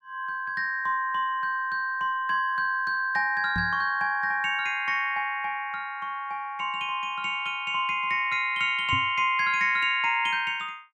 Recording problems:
microphone thump; at 3.5 s and at 9 s; peak -3 dB vs average level

